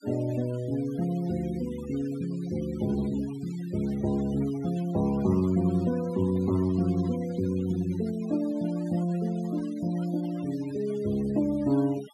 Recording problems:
noise reduction artefacts; signal-to-artefact ratio 19 dB

